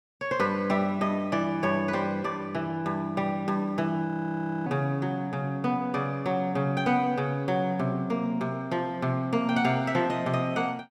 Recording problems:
audio freezing; at 4 s for 0.5 s

